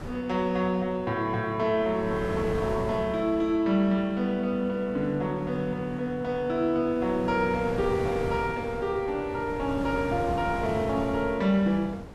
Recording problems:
wind noise; below 570 Hz, SNR 11 dB

